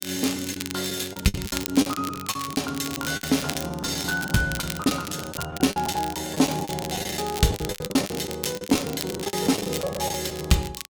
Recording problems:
crackle; vinyl, SNR 10 dB
lost packets; 17% of the sound replaced, filled with the last packet

